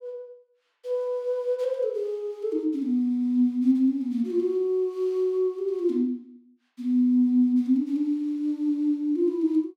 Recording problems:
none

